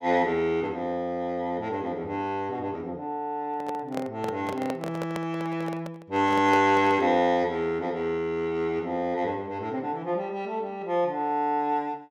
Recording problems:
handling noise; from 3.5 to 7 s; peak -1 dB vs average level

